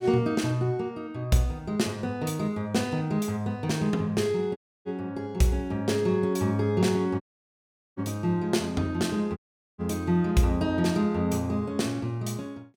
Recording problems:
audio cutting out; at 4.5 s, at 7 s for 1 s and at 9.5 s

